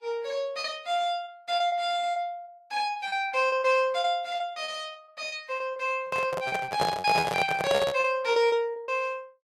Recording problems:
lossy codec; Vorbis, log-spectral distance 2 dB, nothing above 12.3 kHz
lost packets; 15% of the sound replaced, filled with repeated pitch periods
microphone handling noise; from 6 to 8 s; peak +3 dB vs average level

